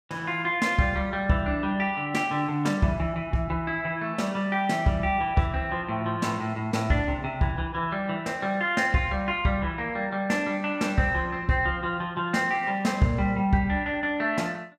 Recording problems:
none

